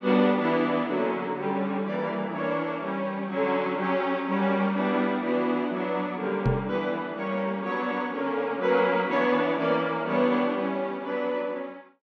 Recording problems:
microphone bump; at 6.5 s; peak +5 dB vs average level

